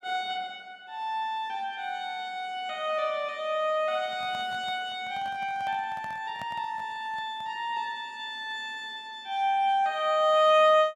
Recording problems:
handling noise; from 4 to 7.5 s; peak -10 dB vs average level

